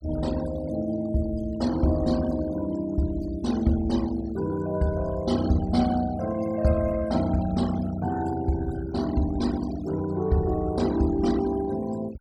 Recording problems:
denoising artefacts; signal-to-artefact ratio 17 dB

